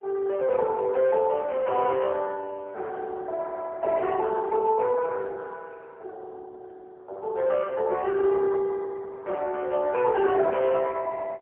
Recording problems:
phone line; 340 Hz to 3.8 kHz, AMR-NB, then MP3

